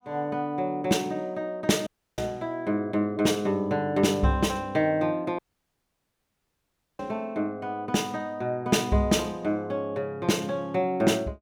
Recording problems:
audio cutting out; at 2 s and at 5.5 s for 1.5 s

